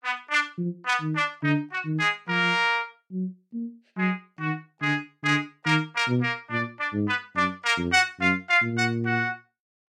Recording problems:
none

